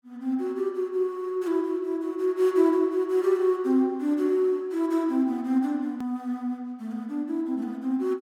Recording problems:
hard cut with a click; at 6 s

